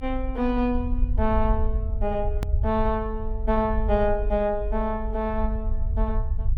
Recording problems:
low-frequency rumble; below 62 Hz, SNR 2 dB
edit click; at 2.5 s

